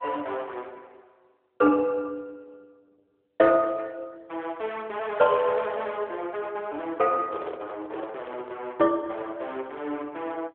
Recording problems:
phone line; 260 Hz to 3.6 kHz, AMR-NB
microphone handling noise; from 7 to 8.5 s; peak -4 dB vs average level

